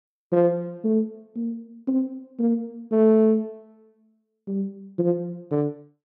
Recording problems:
none

